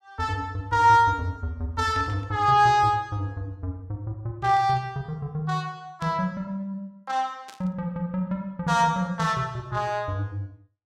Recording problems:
static burst; 4 times, first at 2 s; peak -14 dB vs average level

